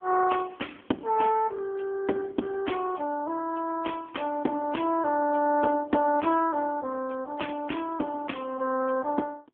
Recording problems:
telephone audio; 240 Hz to 3.4 kHz, AMR-NB

